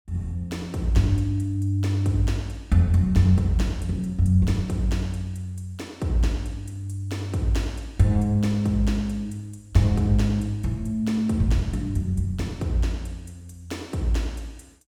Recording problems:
none

